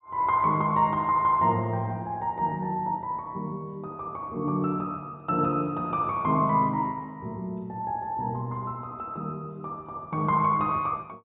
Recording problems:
treble missing; nothing above 4 kHz

